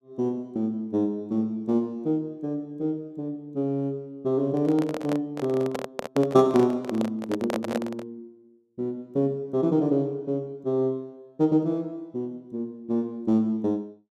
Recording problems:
microphone handling noise; from 4.5 to 8 s; peak +1 dB vs average level

